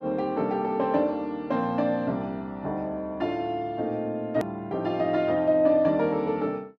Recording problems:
edit click; at 4.5 s

